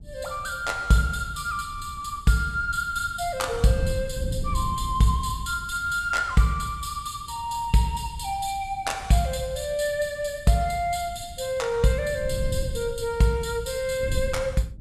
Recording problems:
wind noise; below 110 Hz, SNR 11 dB

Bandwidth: 14.5 kHz